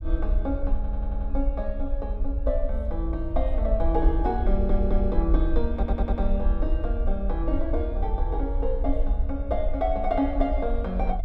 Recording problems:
low-frequency rumble; below 52 Hz, SNR -1 dB
stutter; at 1 s, at 4.5 s and at 5.5 s

